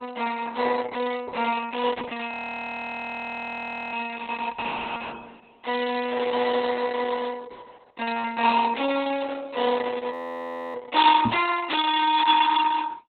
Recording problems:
lossy codec; Opus, log-spectral distance 5 dB, nothing above 3.7 kHz
audio freezing; at 2.5 s for 1.5 s and at 10 s for 0.5 s
knock on the microphone; at 11 s; peak +4 dB vs average level

